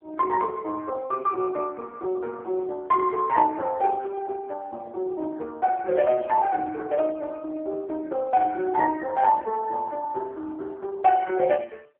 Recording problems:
phone line; 320 Hz to 2.2 kHz, AMR-NB

